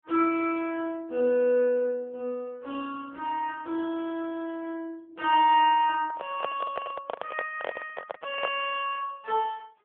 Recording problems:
phone line; 260 Hz to 3.3 kHz, AMR-NB
microphone handling noise; from 6 to 8.5 s; peak 0 dB vs average level

